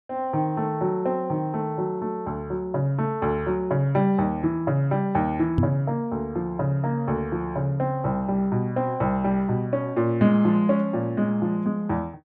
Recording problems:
microphone bump; at 5.5 s; peak +6 dB vs average level

